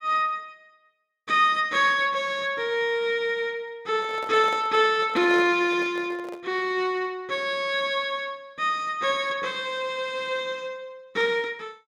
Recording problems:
microphone handling noise; from 4 to 6.5 s; peak -7 dB vs average level

